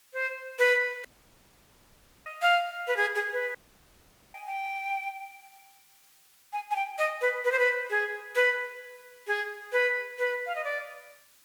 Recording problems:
background hiss; slope +2 dB per octave, SNR 30 dB
audio cutting out; at 1 s for 1 s and at 3.5 s for 1 s

